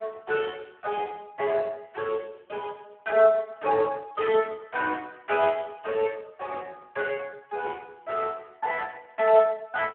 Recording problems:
phone line; 240 Hz to 2.5 kHz, Speex

